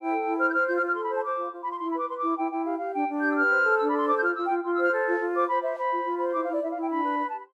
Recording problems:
none

